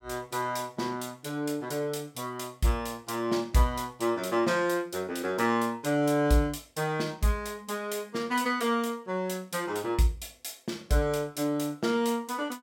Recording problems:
none

